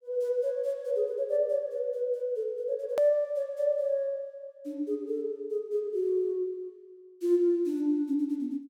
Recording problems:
click at an edit; at 3 s

